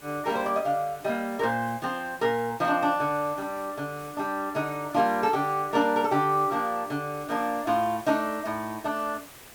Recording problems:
background hiss; slope -3 dB per octave, SNR 20 dB

